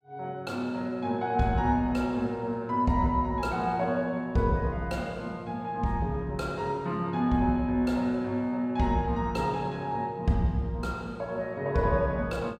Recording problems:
none

